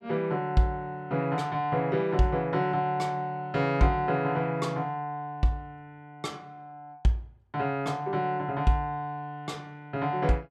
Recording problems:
none

